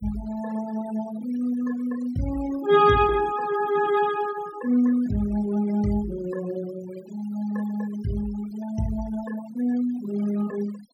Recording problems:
noise reduction artefacts; signal-to-artefact ratio 18 dB

